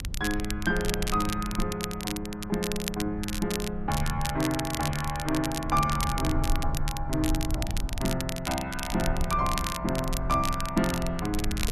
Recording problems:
low-frequency rumble; below 74 Hz, strongest tone 24 Hz, SNR 7 dB
crackling; vinyl, SNR 6 dB

